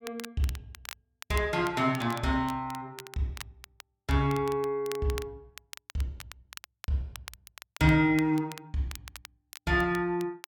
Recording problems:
crackle; vinyl, SNR 17 dB

